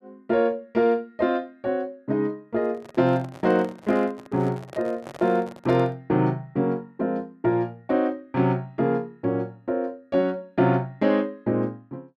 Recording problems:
microphone handling noise; from 2.5 to 6 s; peak -11 dB vs average level

